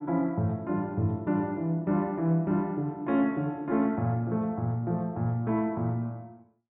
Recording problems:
treble cut off; nothing above 4 kHz

